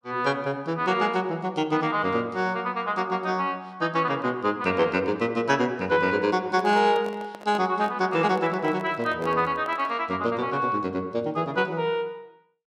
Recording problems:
handling noise; from 6.5 to 10 s; peak -9 dB vs average level

